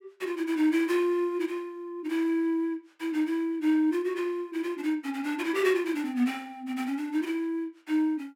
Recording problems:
none

